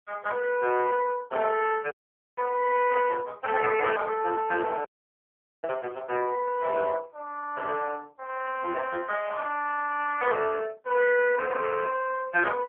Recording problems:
telephone audio; 340 Hz to 3.1 kHz, AMR-NB
dropout; at 2 s and at 5 s for 1 s

